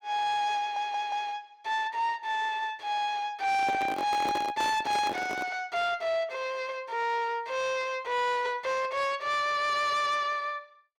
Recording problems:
distortion; soft clipping, signal-to-distortion ratio 11 dB
audio stuttering; at 0.5 s
handling noise; from 3.5 to 5.5 s; peak -1 dB vs average level

